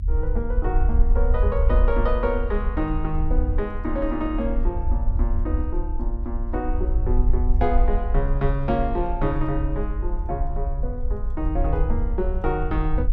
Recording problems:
low-frequency rumble; below 58 Hz, SNR -2 dB

